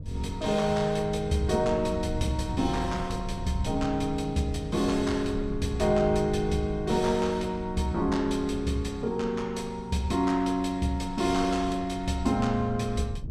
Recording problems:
wind on the microphone; below 120 Hz, SNR 11 dB

